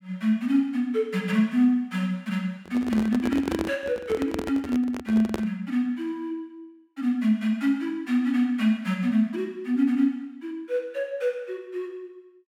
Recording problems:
microphone handling noise; from 2.5 to 5.5 s; peak +1 dB vs average level

